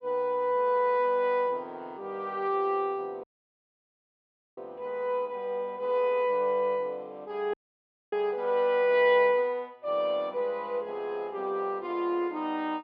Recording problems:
dropout; at 3 s for 1.5 s and at 7.5 s for 0.5 s

